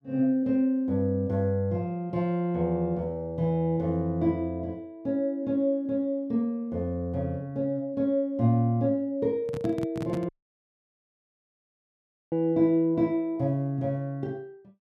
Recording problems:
handling noise; at 9.5 s; peak -2 dB vs average level
dropout; at 10 s for 2 s

